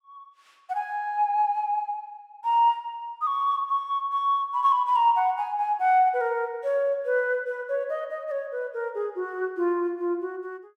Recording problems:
none

